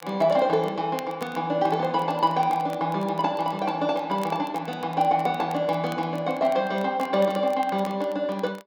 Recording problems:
crackling; vinyl, SNR 24 dB

